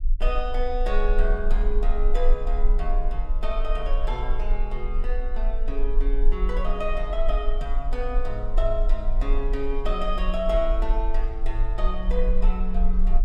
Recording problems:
rumble; below 36 Hz, strongest tone 20 Hz, SNR -3 dB

